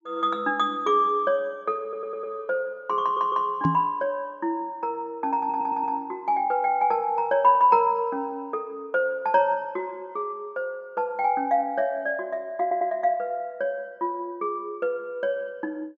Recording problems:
low-pass filter; nothing above 8 kHz
audio stuttering; 4 times, first at 2 s
microphone bump; at 3.5 s; peak +5 dB vs average level

